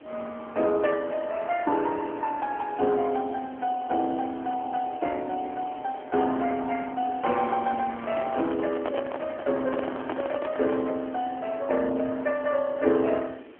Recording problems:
telephone audio; 220 Hz to 3.5 kHz, AMR-NB
hiss; SNR 20 dB
microphone handling noise; from 8 to 11 s; peak 0 dB vs average level

